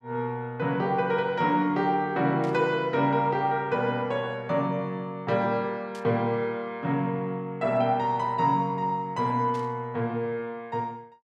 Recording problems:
static burst; at 2.5 s, at 6 s and at 9.5 s; peak -15 dB vs average level

